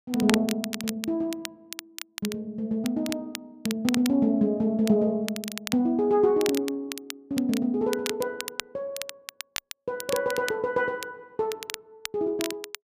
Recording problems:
crackling; vinyl, SNR 10 dB

